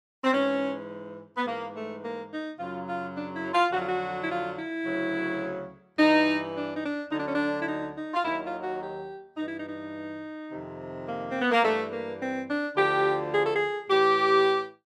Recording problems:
none

